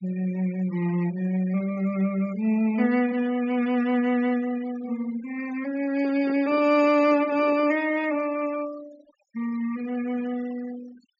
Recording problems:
treble missing; nothing above 8 kHz
denoising artefacts; signal-to-artefact ratio 19 dB
handling noise; from 6 to 8 s; peak -10 dB vs average level

